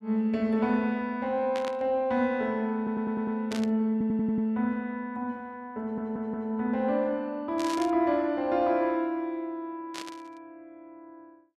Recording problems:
burst of static; 4 times, first at 1.5 s; peak -6 dB vs average level
audio stuttering; at 3 s, at 4 s and at 6 s

